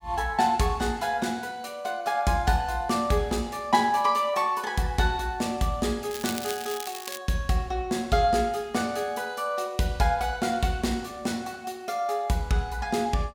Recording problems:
crackling; from 6 to 7 s; loose cable, SNR 9 dB

